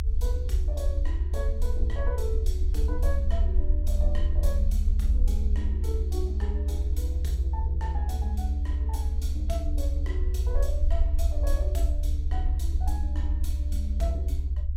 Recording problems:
low-frequency rumble; below 70 Hz, SNR -10 dB

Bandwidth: 16 kHz